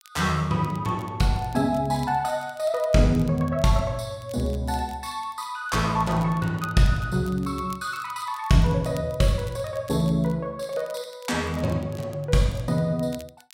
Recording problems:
crackle; vinyl, SNR 25 dB

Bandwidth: 16 kHz